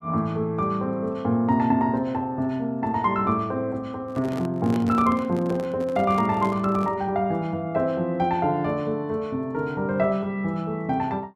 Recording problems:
microphone handling noise; from 4 to 7 s; peak -4 dB vs average level

